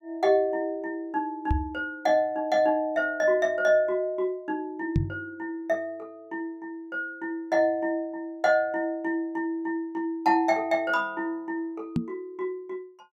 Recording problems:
microphone thump; at 1.5 s, at 5 s and at 12 s; peak +6 dB vs average level

